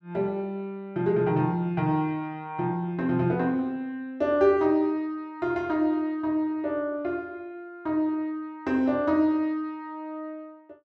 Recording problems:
none

